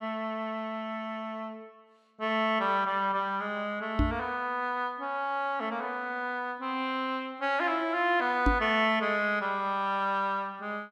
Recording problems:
microphone thump; at 4 s and at 8.5 s; peak +6 dB vs average level

